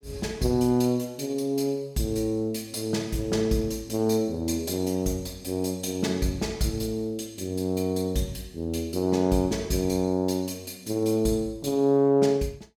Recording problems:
none

